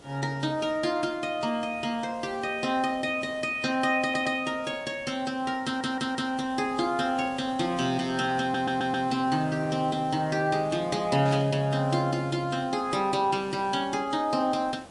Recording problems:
codec artefacts; MP3, log-spectral distance 2 dB, nothing above 11 kHz
hiss; slope -6 dB per octave, SNR 20 dB
stutter; at 4 s, at 5.5 s and at 8.5 s
burst of static; at 11 s; peak -11 dB vs average level

